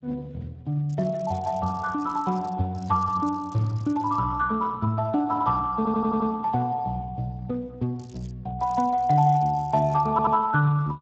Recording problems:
lossy compression; Speex, log-spectral distance 2 dB
crackle; 4 times, first at 1 s; loose cable, SNR 29 dB
audio stuttering; at 6 s and at 10 s

